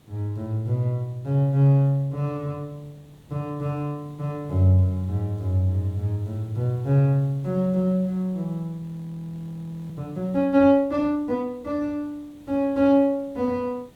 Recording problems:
background hiss; SNR 28 dB
frozen audio; at 9 s for 1 s

